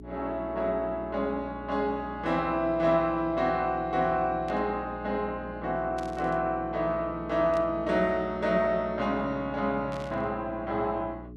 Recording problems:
hum; 60 Hz, harmonics up to 420 Hz, SNR 15 dB
static burst; 4 times, first at 4.5 s; peak -13 dB vs average level

